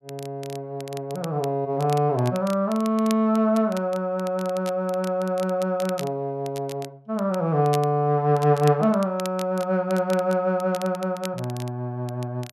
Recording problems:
crackling; vinyl, SNR 19 dB

